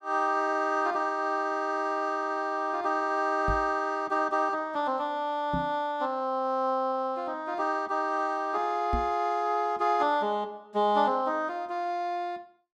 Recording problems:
knock on the microphone; at 3.5 s, at 5.5 s and at 9 s; peak 0 dB vs average level

